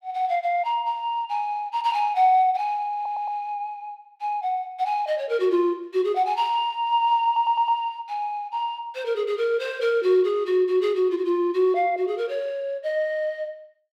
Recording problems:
stutter; at 3 s and at 7.5 s

